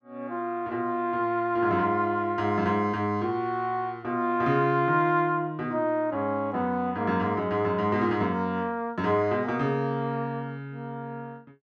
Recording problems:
none

